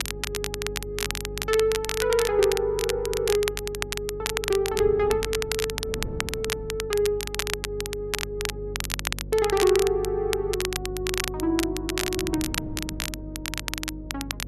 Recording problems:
hum; 50 Hz, harmonics up to 550 Hz, SNR 12 dB
wind noise; below 250 Hz, SNR 17 dB
crackling; vinyl, SNR 4 dB

